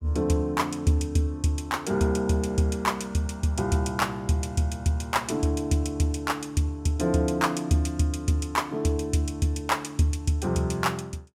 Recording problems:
none

